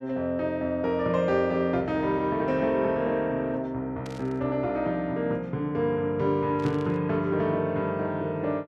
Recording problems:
burst of static; at 4 s and at 6.5 s; peak -12 dB vs average level

